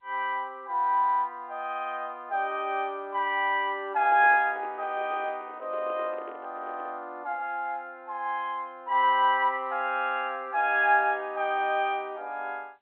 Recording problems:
phone line; 280 Hz to 3.3 kHz, G.711
microphone handling noise; from 4 to 7 s; peak -12 dB vs average level

